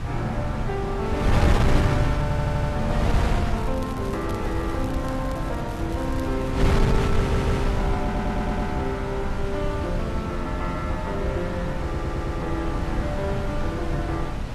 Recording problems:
lossy codec; AAC, log-spectral distance 2 dB
wind on the microphone; below 200 Hz, SNR -2 dB
audio stuttering; 4 times, first at 2 s
crackle; from 3.5 to 6.5 s; loose cable, SNR 18 dB

